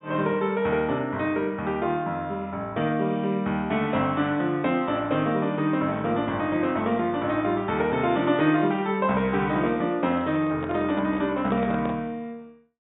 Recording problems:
low-pass filter; nothing above 4 kHz
handling noise; from 10 to 12 s; peak -6 dB vs average level

